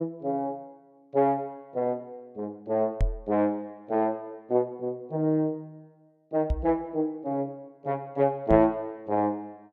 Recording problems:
microphone bump; at 3 s, at 6.5 s and at 8.5 s; peak +4 dB vs average level

